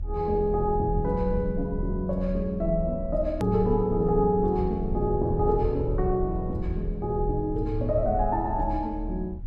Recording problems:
low-frequency rumble; below 74 Hz, strongest tone 36 Hz, SNR 8 dB
click at an edit; at 3.5 s

